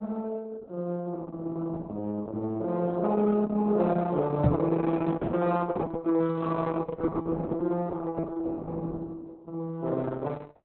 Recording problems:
lossy codec; Opus, log-spectral distance 3 dB, nothing above 4 kHz
microphone bump; at 4.5 s; peak +9 dB vs average level

